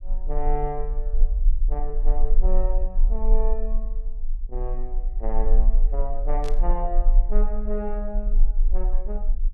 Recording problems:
rumble; below 34 Hz, strongest tone 22 Hz, SNR -7 dB
static burst; at 6.5 s; peak -4 dB vs average level

